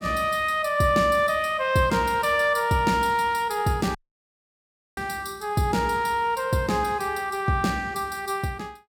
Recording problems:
dropout; at 4 s for 1 s

